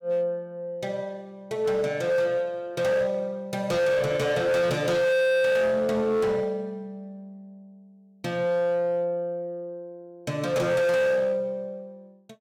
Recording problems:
distortion; hard clipping, signal-to-distortion ratio 6 dB

